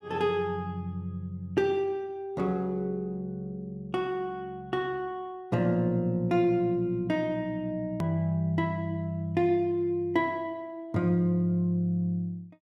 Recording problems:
edit click; at 8 s

